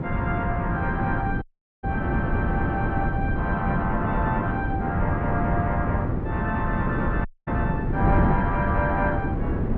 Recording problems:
wind noise; below 270 Hz, SNR -2 dB
dropout; at 1.5 s and at 7.5 s

